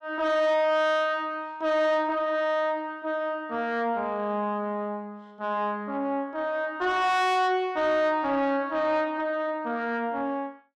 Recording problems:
distorted audio; soft clipping, signal-to-distortion ratio 11 dB

